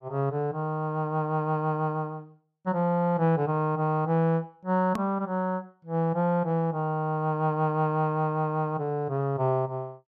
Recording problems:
edit click; at 5 s

